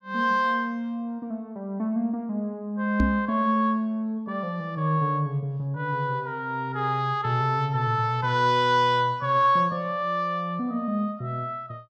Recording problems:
knock on the microphone; at 3 s; peak +4 dB vs average level

